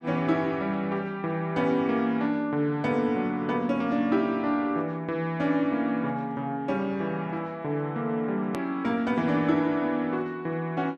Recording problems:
click at an edit; at 8.5 s

